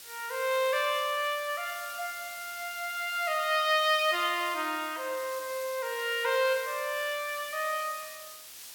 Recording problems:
background hiss; slope +3 dB per octave, SNR 13 dB

